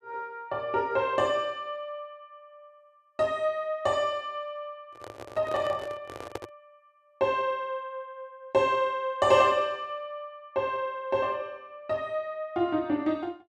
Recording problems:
microphone handling noise; from 5 to 6.5 s; peak -3 dB vs average level

